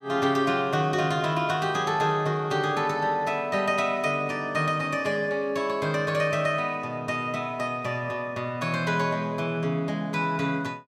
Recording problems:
none

